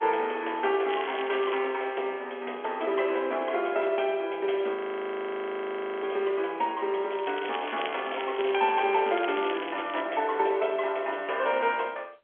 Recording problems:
telephone audio; 300 Hz to 3.4 kHz, G.711
crackling; at 1 s and from 7 to 10 s; loose cable, SNR 13 dB
frozen audio; at 5 s for 1.5 s

